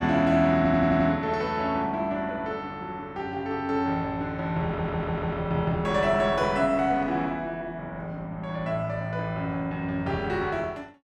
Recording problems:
audio stuttering; at 0.5 s and at 4.5 s

